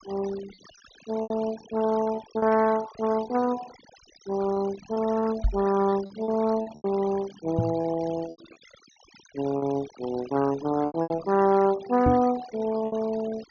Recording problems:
treble cut off; nothing above 6.6 kHz
denoising artefacts; signal-to-artefact ratio 17 dB
packet loss; 8% of the sound replaced, filled with repeated pitch periods
knock on the microphone; at 5.5 s, at 7.5 s and at 12 s; peak +5 dB vs average level

